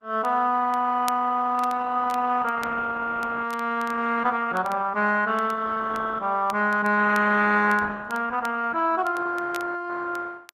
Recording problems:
codec artefacts; Opus, log-spectral distance 4 dB
crackling; vinyl, SNR 23 dB

